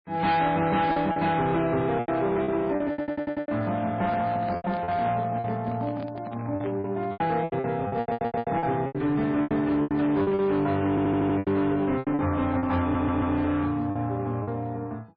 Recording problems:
codec artefacts; MP3, log-spectral distance 2 dB, nothing above 4.2 kHz
distorted audio; hard clipping, uneven, signal-to-distortion ratio 10 dB
lost packets; 12% of the sound replaced, filled with repeated pitch periods
audio stuttering; 4 times, first at 3 s
handling noise; from 3.5 to 7 s; peak -5 dB vs average level

